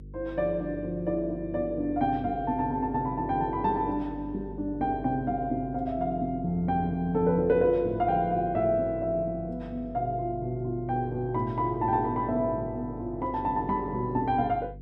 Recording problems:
hum; 50 Hz, harmonics up to 450 Hz, SNR 16 dB

